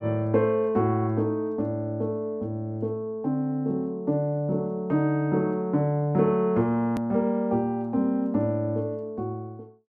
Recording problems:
edit click; at 7 s

